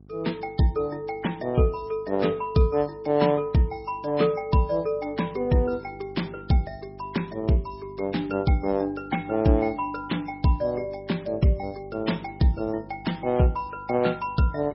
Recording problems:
codec artefacts; MP3, log-spectral distance 6 dB, nothing above 5.5 kHz
hum; 50 Hz, harmonics up to 750 Hz, SNR 22 dB

